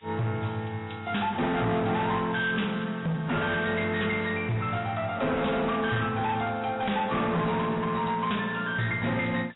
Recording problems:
lossy codec; AAC, log-spectral distance 12 dB, nothing above 3.8 kHz
distortion; hard clipping, signal-to-distortion ratio 8 dB
hiss; SNR 28 dB

